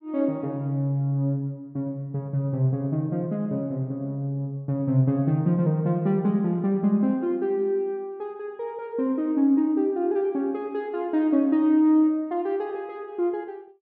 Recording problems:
none

